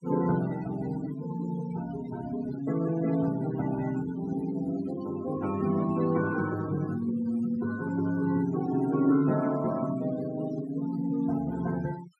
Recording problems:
denoising artefacts; signal-to-artefact ratio 15 dB

